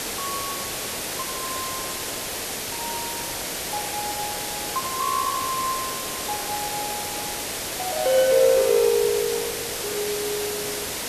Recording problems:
hiss; slope -2 dB per octave, SNR 2 dB

